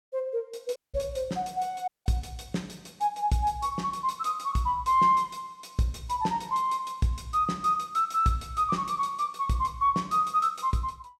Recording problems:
dropout; at 1 s and at 2 s

